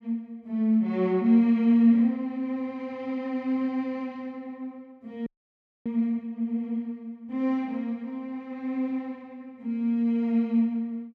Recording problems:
audio freezing; at 5.5 s for 0.5 s

